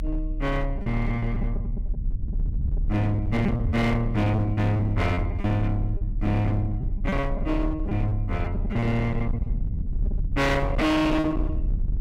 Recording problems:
distortion; hard clipping, uneven, signal-to-distortion ratio 8 dB
low-frequency rumble; below 80 Hz, strongest tone 36 Hz, SNR 5 dB
packet loss; 10% of the sound replaced, filled with repeated pitch periods

